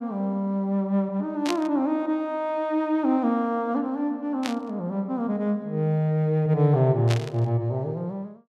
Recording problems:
burst of static; at 1.5 s, at 4.5 s and at 7 s; peak 0 dB vs average level

